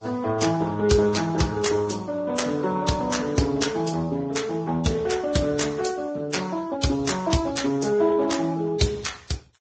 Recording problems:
codec artefacts; Speex, then Vorbis, log-spectral distance 4 dB, nothing above 7.6 kHz

